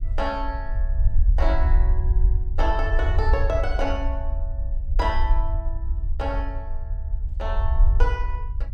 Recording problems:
rumble; below 58 Hz, SNR -5 dB

